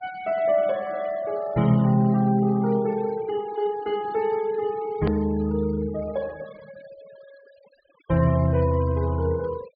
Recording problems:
low-pass filter; nothing above 4.8 kHz
denoising artefacts; signal-to-artefact ratio 23 dB
edit click; at 5 s

